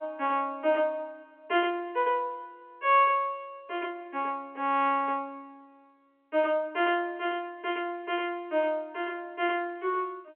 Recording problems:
phone line; 300 Hz to 3.3 kHz, G.711

